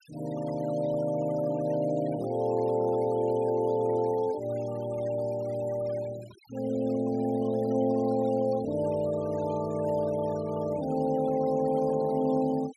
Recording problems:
noise reduction artefacts; signal-to-artefact ratio 20 dB

